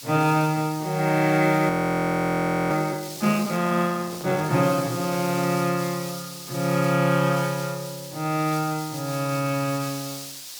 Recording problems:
background hiss; SNR 13 dB
audio freezing; at 1.5 s for 1 s
microphone handling noise; from 4 to 5.5 s; peak -11 dB vs average level

